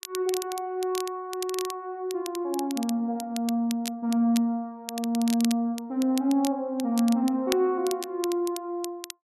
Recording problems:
crackle; vinyl, SNR 12 dB

